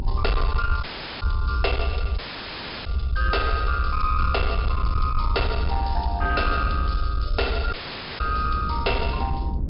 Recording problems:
treble missing; nothing above 5.5 kHz
distorted audio; soft clipping, signal-to-distortion ratio 12 dB
low-frequency rumble; below 74 Hz, SNR 1 dB
wind on the microphone; below 280 Hz, SNR 11 dB
audio cutting out; at 1 s, at 2 s for 0.5 s and at 7.5 s

